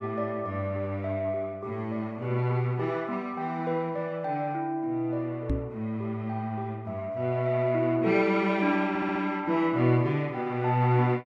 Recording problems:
microphone bump; at 5.5 s; peak +4 dB vs average level
stutter; at 9 s

